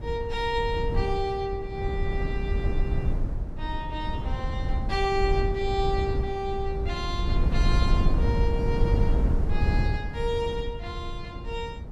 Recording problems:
wind noise; below 100 Hz, SNR -2 dB

